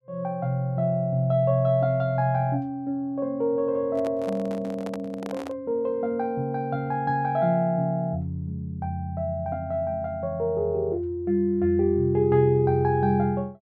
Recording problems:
microphone handling noise; from 4 to 5.5 s; peak -8 dB vs average level

